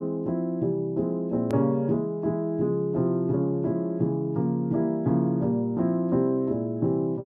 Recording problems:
click at an edit; at 1.5 s

